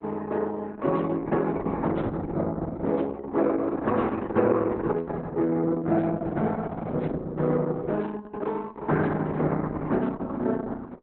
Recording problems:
lossy compression; Opus, log-spectral distance 3 dB, nothing above 4 kHz

